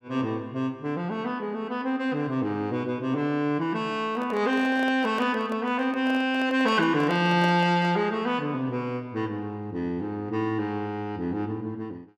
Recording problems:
handling noise; from 4 to 8 s; peak -5 dB vs average level

